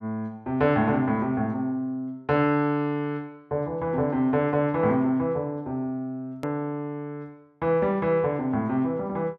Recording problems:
click at an edit; at 6.5 s

